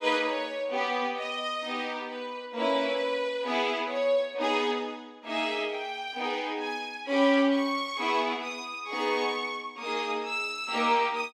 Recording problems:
none

